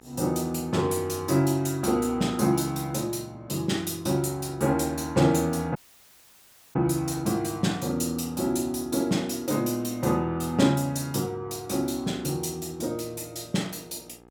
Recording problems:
electrical hum; 60 Hz, harmonics up to 2.2 kHz, SNR 28 dB
audio cutting out; at 6 s for 1 s

